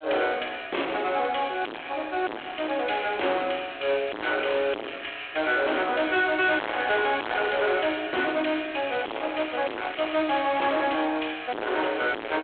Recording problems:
telephone audio; 280 Hz to 3.6 kHz, G.726
distorted audio; hard clipping, uneven, signal-to-distortion ratio 3 dB
crackle; from 9 to 11 s; loose cable, SNR 18 dB

